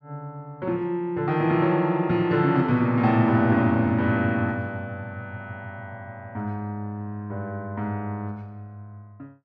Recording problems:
none

